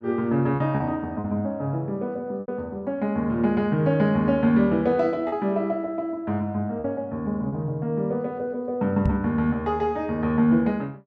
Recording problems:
packet loss; 3% of the sound replaced, filled with repeated pitch periods
microphone bump; at 9 s; peak +4 dB vs average level

